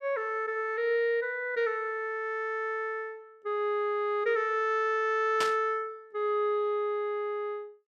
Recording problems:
burst of static; at 5.5 s; peak +1 dB vs average level

